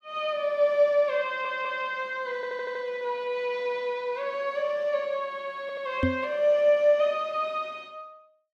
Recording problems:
stutter; at 1.5 s, at 2.5 s and at 5.5 s
knock on the microphone; at 6 s; peak +5 dB vs average level

